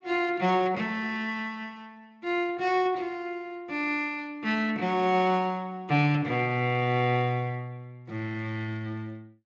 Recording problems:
codec artefacts; Speex, log-spectral distance 2 dB

